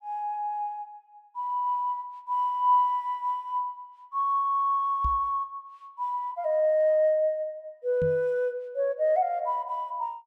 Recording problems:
microphone thump; at 5 s and at 8 s; peak -2 dB vs average level

